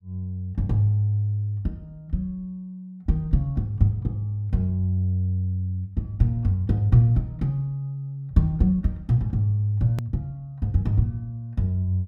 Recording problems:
click at an edit; at 10 s

